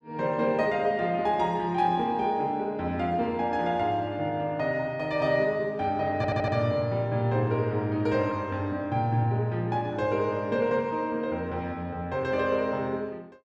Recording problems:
audio stuttering; at 6 s

